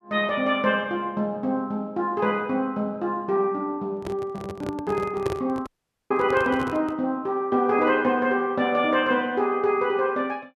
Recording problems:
microphone handling noise; from 4 to 7 s; peak -1 dB vs average level
audio cutting out; at 5.5 s

